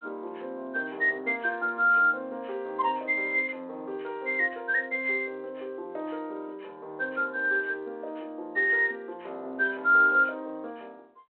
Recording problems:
phone line; 280 Hz to 3.7 kHz, G.726

